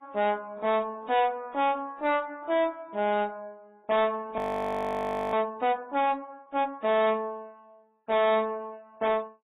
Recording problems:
lossy compression; MP3, then AAC, log-spectral distance 2 dB, nothing above 13.1 kHz
distortion; soft clipping, signal-to-distortion ratio 7 dB
audio freezing; at 4.5 s for 1 s

